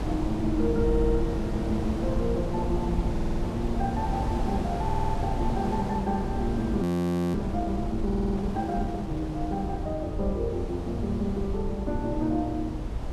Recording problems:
low-frequency rumble; below 66 Hz, SNR 6 dB
wind on the microphone; below 550 Hz, SNR 5 dB
audio stuttering; 4 times, first at 1 s
frozen audio; at 7 s for 0.5 s

